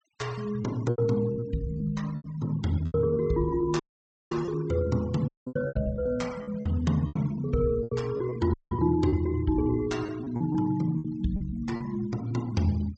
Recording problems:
treble missing; nothing above 8 kHz
noise reduction artefacts; signal-to-artefact ratio 22 dB
packet loss; 10% of the sound replaced, filled with repeated pitch periods
audio cutting out; at 4 s for 0.5 s, at 5.5 s and at 8.5 s

